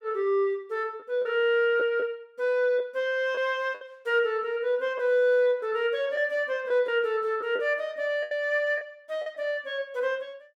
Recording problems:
packet loss; 4% of the sound replaced, filled with the last packet

